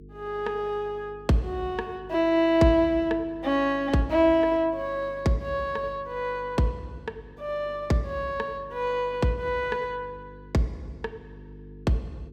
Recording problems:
mains hum; 50 Hz, harmonics up to 450 Hz, SNR 21 dB

